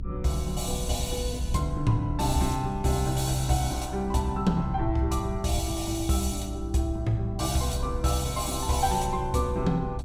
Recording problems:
low-frequency rumble; below 86 Hz, strongest tone 60 Hz, SNR 7 dB

